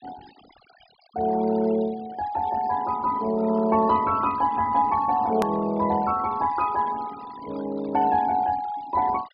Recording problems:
treble cut off; nothing above 5 kHz
denoising artefacts; signal-to-artefact ratio 20 dB
hard cut with a click; at 5.5 s

